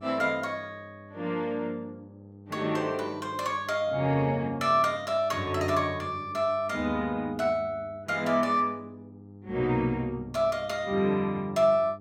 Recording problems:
mains hum; 50 Hz, harmonics up to 900 Hz, SNR 20 dB

